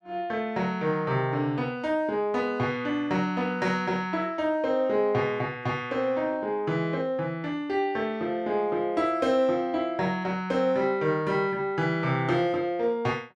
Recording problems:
none

